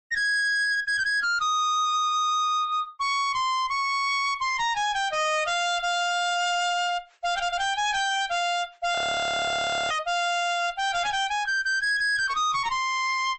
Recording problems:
lossy codec; MP3, log-spectral distance 3 dB, nothing above 8.2 kHz
distorted audio; hard clipping, uneven, signal-to-distortion ratio 5 dB
frozen audio; at 9 s for 1 s

